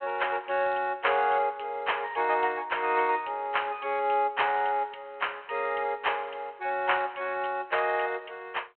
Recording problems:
phone line; 320 Hz to 3.2 kHz, G.726

